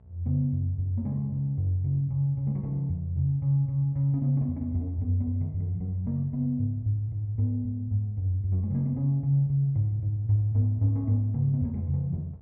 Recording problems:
electrical hum; 60 Hz, harmonics up to 840 Hz, SNR 29 dB

